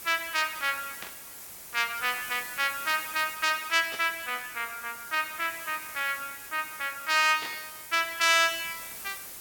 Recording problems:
hiss; slope -1 dB per octave, SNR 12 dB
static burst; at 1 s, at 4 s and at 7.5 s; peak -7 dB vs average level

